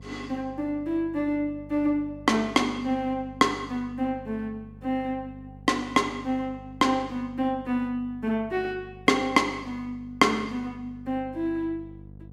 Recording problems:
hum; 50 Hz, harmonics up to 550 Hz, SNR 19 dB

